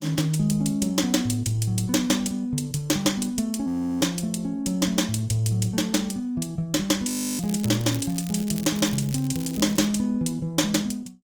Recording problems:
codec artefacts; Opus, log-spectral distance 4 dB, nothing above 19 kHz
audio freezing; at 3.5 s and at 7 s
crackling; from 7.5 to 10 s; loose cable, SNR 16 dB

